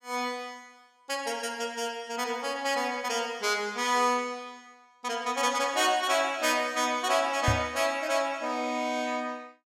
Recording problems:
knock on the microphone; at 7.5 s; peak +4 dB vs average level

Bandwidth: 16.5 kHz